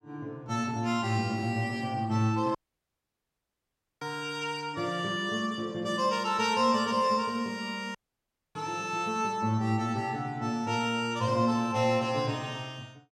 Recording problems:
audio cutting out; at 2.5 s for 1.5 s and at 8 s for 0.5 s

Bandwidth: 16 kHz